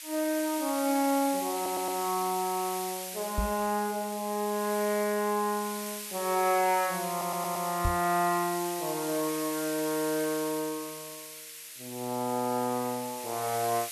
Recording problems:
hiss; SNR 8 dB
audio stuttering; at 1.5 s and at 7 s
microphone bump; at 3.5 s and at 8 s; peak +3 dB vs average level

